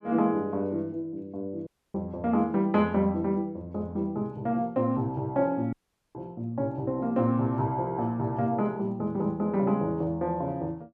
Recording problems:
dropout; at 1.5 s and at 5.5 s

